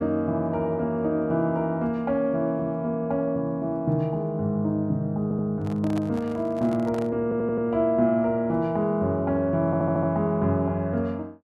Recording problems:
audio stuttering; at 5 s, at 7 s and at 9.5 s
handling noise; from 5.5 to 7 s; peak -7 dB vs average level

